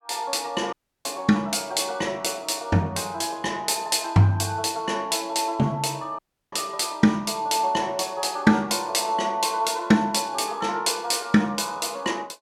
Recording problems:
dropout; at 0.5 s and at 6 s

